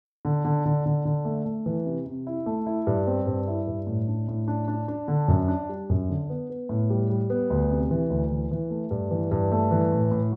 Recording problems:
none

